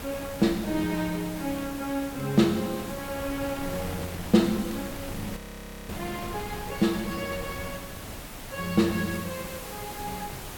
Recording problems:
hiss; slope -3 dB per octave, SNR 12 dB
wind on the microphone; below 980 Hz, SNR 12 dB
crackle; vinyl, SNR 30 dB
frozen audio; at 5.5 s for 0.5 s

